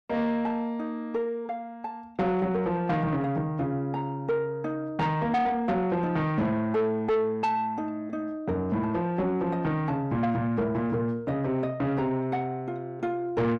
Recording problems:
distortion; soft clipping, signal-to-distortion ratio 11 dB

